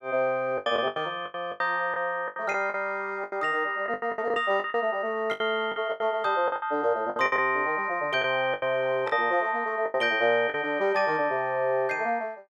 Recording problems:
lost packets; 13% of the sound replaced, filled with the last packet

